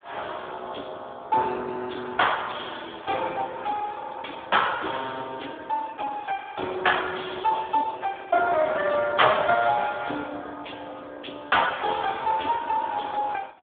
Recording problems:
telephone audio; 260 Hz to 3.6 kHz, Speex

